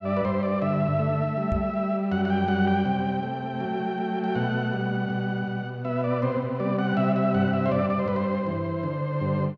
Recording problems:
microphone thump; at 1.5 s; peak +1 dB vs average level

